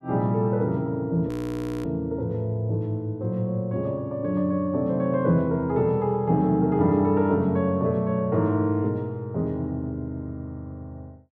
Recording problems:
frozen audio; at 1.5 s for 0.5 s

